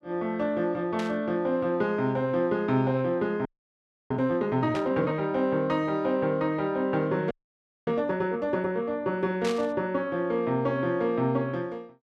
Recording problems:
burst of static; at 1 s, at 5 s and at 9.5 s; peak -5 dB vs average level
audio freezing; at 3.5 s for 0.5 s and at 7.5 s for 0.5 s

